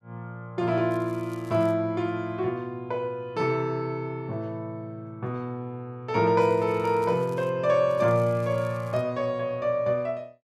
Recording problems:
crackle; at 1 s, from 6.5 to 7.5 s and from 8 to 9 s; loose cable, SNR 28 dB

